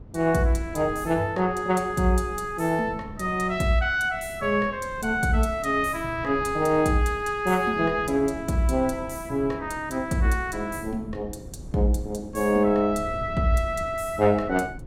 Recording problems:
wind on the microphone; below 210 Hz, SNR 17 dB

